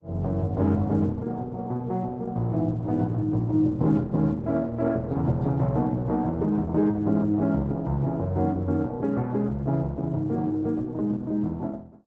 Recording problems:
lossy compression; Opus, log-spectral distance 2 dB, nothing above 7.3 kHz

